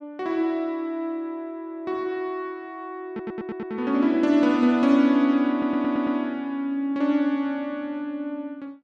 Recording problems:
stutter; at 3 s and at 5.5 s

